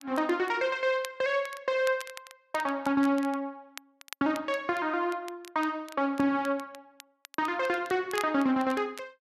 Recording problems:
crackle; vinyl, SNR 19 dB

